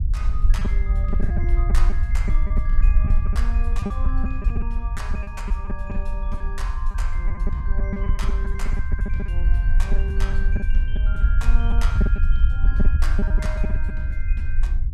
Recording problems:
low-frequency rumble; below 56 Hz, SNR -12 dB
packet loss; 9% of the sound replaced, filled with repeated pitch periods

